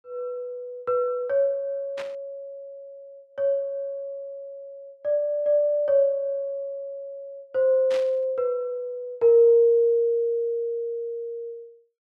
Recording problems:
burst of static; at 2 s and at 8 s; peak -10 dB vs average level

